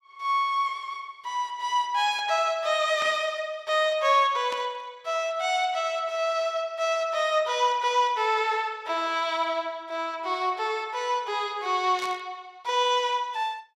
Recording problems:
static burst; at 3 s, at 4.5 s and at 12 s; peak -8 dB vs average level

